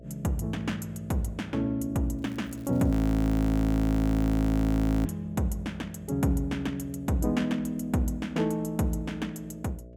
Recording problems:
electrical hum; 60 Hz, harmonics up to 660 Hz, SNR 21 dB
crackle; at 2 s; loose cable, SNR 29 dB
frozen audio; at 3 s for 2 s

